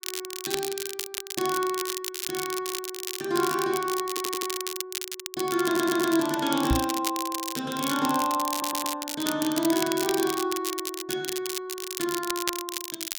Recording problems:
crackle; vinyl, SNR 4 dB
stutter; at 4 s, at 5.5 s and at 8.5 s
microphone thump; at 6.5 s; peak +6 dB vs average level

